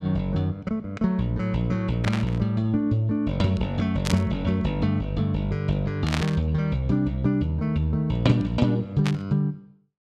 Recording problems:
static burst; 4 times, first at 2 s; peak 0 dB vs average level

